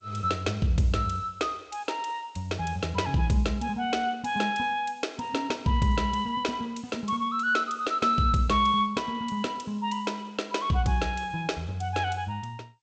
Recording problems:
lossy compression; G.722, log-spectral distance 3 dB, nothing above 7.8 kHz

